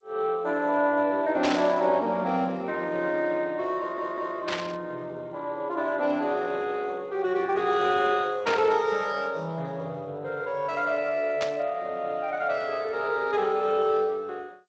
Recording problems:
lossy codec; Speex, then G.722, log-spectral distance 3 dB
burst of static; 4 times, first at 1.5 s; peak +2 dB vs average level
stutter; at 4 s

